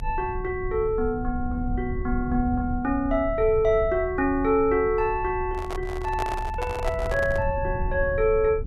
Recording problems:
low-frequency rumble; below 86 Hz, SNR 9 dB
handling noise; from 5.5 to 7.5 s; peak -3 dB vs average level

